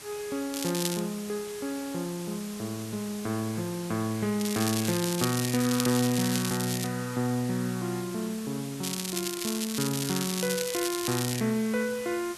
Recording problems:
background hiss; slope 0 dB per octave, SNR 12 dB
crackle; at 0.5 s, from 4.5 to 7 s and from 9 to 11 s; loose cable, SNR 3 dB

